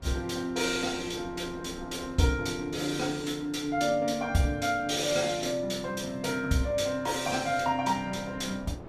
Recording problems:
wind on the microphone; below 500 Hz, SNR 20 dB

